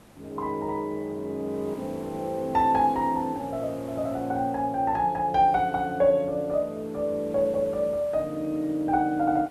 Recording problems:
hiss; slope -6 dB per octave, SNR 22 dB

